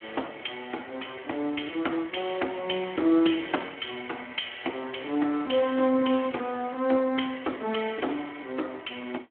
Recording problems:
telephone audio; 240 Hz to 3.3 kHz, Speex

